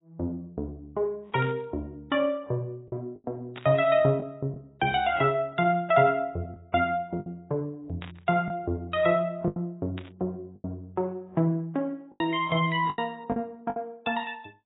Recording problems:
codec artefacts; AAC, log-spectral distance 2 dB, nothing above 3.3 kHz
lost packets; 5% of the sound replaced, filled with the last packet
static burst; 4 times, first at 1.5 s; peak -9 dB vs average level

